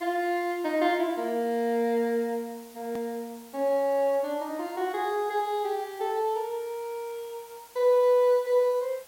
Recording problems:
hiss; SNR 23 dB
hard cut with a click; at 3 s

